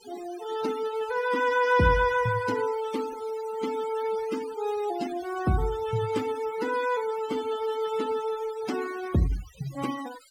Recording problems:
denoising artefacts; signal-to-artefact ratio 15 dB

